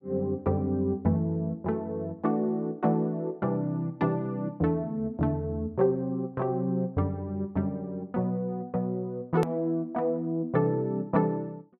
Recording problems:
edit click; at 9.5 s

